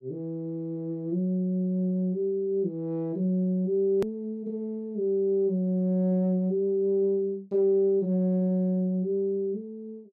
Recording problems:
click at an edit; at 4 s

